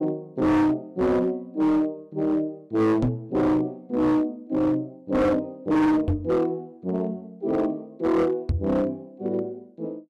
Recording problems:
distorted audio; hard clipping, signal-to-distortion ratio 7 dB
microphone bump; at 3 s, at 6 s and at 8.5 s; peak +4 dB vs average level

